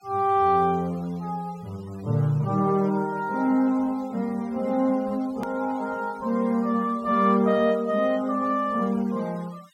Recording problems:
noise reduction artefacts; signal-to-artefact ratio 27 dB
edit click; at 5.5 s

